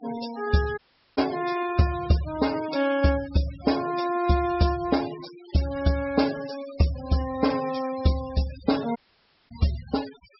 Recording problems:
low-pass filter; nothing above 5.5 kHz
noise reduction artefacts; signal-to-artefact ratio 14 dB
dropout; at 1 s and at 9 s for 0.5 s

